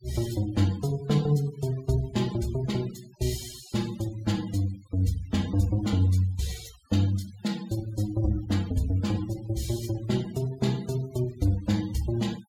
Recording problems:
denoising artefacts; signal-to-artefact ratio 20 dB

